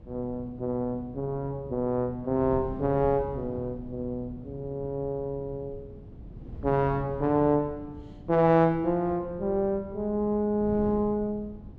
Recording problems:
wind noise; below 210 Hz, SNR 15 dB

